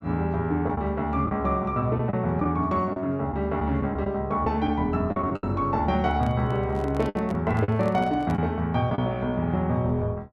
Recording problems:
packet loss; 5% of the sound replaced, filled with the last packet
handling noise; from 6 to 8.5 s; peak -8 dB vs average level

